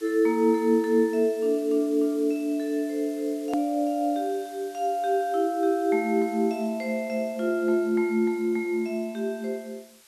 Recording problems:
background hiss; slope +1 dB per octave, SNR 24 dB
hard cut with a click; at 3.5 s

